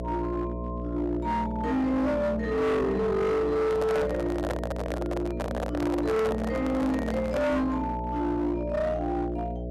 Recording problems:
distortion; hard clipping, uneven, signal-to-distortion ratio 7 dB
hum; 60 Hz, harmonics up to 660 Hz, SNR 7 dB
handling noise; from 3.5 to 7.5 s; peak +1 dB vs average level

